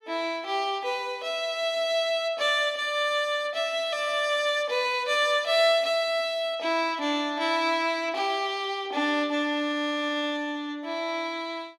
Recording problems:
none

